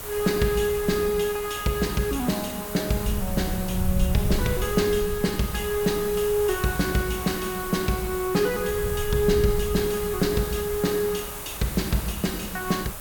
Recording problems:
hiss; SNR 9 dB
wind on the microphone; below 94 Hz, SNR 9 dB

